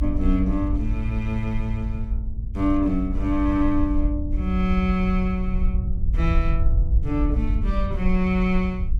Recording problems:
low-frequency rumble; below 62 Hz, SNR 1 dB

